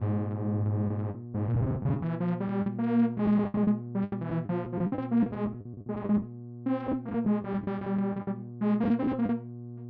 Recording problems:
hum; 60 Hz, harmonics up to 720 Hz, SNR 12 dB
lost packets; 13% of the sound replaced, filled with the last packet

